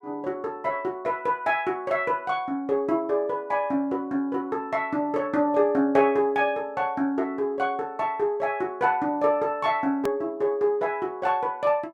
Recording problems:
edit click; at 10 s

